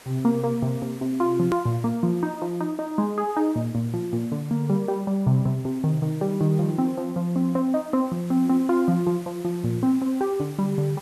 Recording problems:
hiss; slope -2 dB per octave, SNR 23 dB
click at an edit; at 1.5 s

